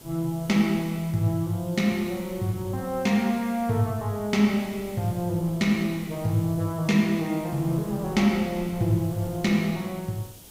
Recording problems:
hiss; SNR 21 dB
wind noise; below 430 Hz, SNR 22 dB

